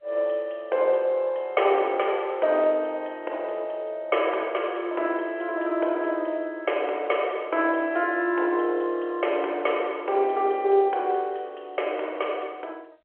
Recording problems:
telephone audio; 340 Hz to 3.4 kHz, G.711

